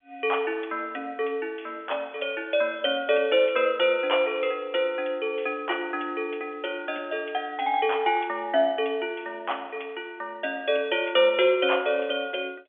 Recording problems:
phone line; 300 Hz to 3.4 kHz, G.711

